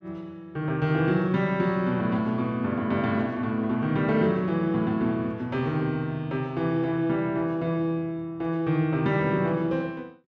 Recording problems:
none

